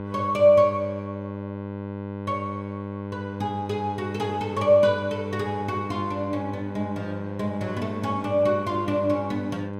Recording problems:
hum; 50 Hz, harmonics up to 1.6 kHz, SNR 8 dB

